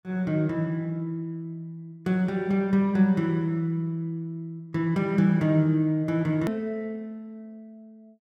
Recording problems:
click at an edit; at 6.5 s

